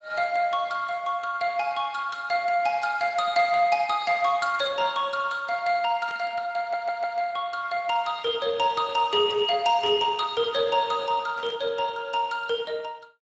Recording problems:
lossy codec; Speex, log-spectral distance 4 dB, nothing above 7.3 kHz
static burst; 4 times, first at 4.5 s; peak -14 dB vs average level
stutter; at 6.5 s

